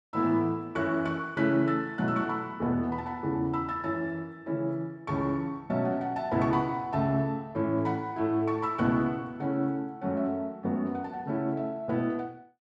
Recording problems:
none

